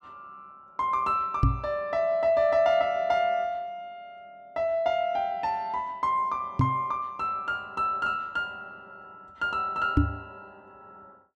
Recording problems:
knock on the microphone; at 1.5 s, at 6.5 s and at 10 s; peak +9 dB vs average level

